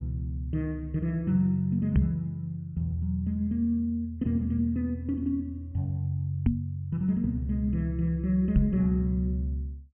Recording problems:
treble cut off; nothing above 3.2 kHz
microphone bump; at 2 s, at 6.5 s and at 8.5 s; peak +8 dB vs average level

